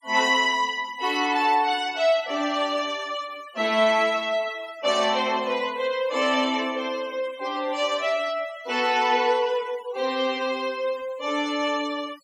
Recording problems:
noise reduction artefacts; signal-to-artefact ratio 19 dB

